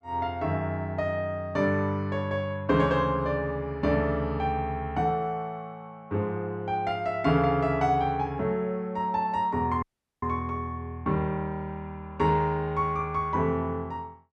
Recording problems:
audio cutting out; at 10 s

